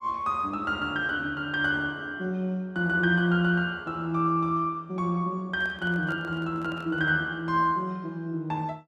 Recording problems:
microphone handling noise; from 5.5 to 7 s; peak -11 dB vs average level

